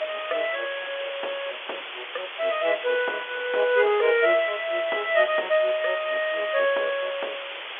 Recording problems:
telephone audio; 340 Hz to 3.6 kHz, G.711
hiss; SNR 10 dB

